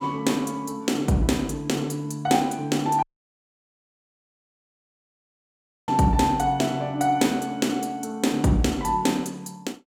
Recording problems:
audio cutting out; at 3 s for 3 s

